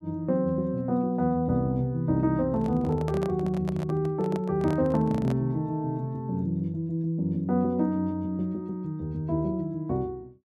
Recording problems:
microphone handling noise; from 2.5 to 5.5 s; peak -6 dB vs average level

